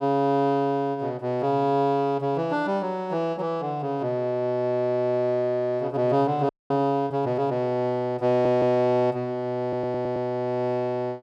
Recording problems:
audio freezing; at 6.5 s
audio stuttering; at 8.5 s and at 9.5 s

